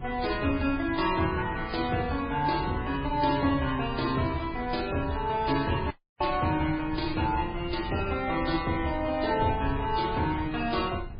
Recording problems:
lossy codec; MP3, then MP3, log-spectral distance 5 dB, nothing above 4.9 kHz
wind on the microphone; below 130 Hz, SNR 12 dB
audio cutting out; at 6 s

